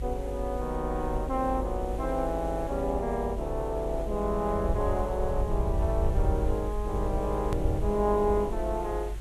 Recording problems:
hiss; slope -4 dB per octave, SNR 19 dB
rumble; below 76 Hz, SNR 4 dB
click at an edit; at 7.5 s

